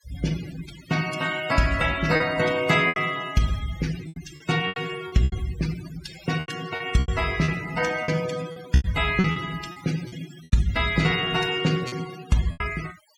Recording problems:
noise reduction artefacts; signal-to-artefact ratio 14 dB
lost packets; 9% of the sound replaced, filled with repeated pitch periods

